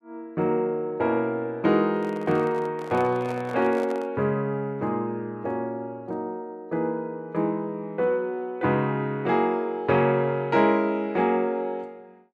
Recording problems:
microphone handling noise; from 2 to 4 s; peak -9 dB vs average level

